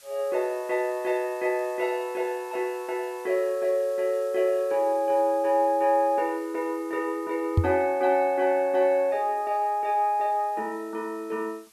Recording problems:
background hiss; slope +3 dB per octave, SNR 26 dB
microphone thump; at 7.5 s; peak +8 dB vs average level

